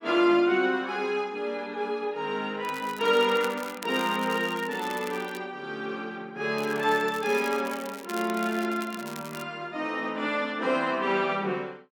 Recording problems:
crackle; from 2.5 to 5.5 s and from 6.5 to 9.5 s; loose cable, SNR 16 dB

